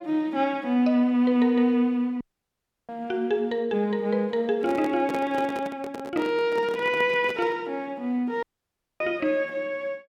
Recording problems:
audio cutting out; at 2 s for 0.5 s and at 8.5 s for 0.5 s
handling noise; from 4.5 to 7.5 s; peak -4 dB vs average level

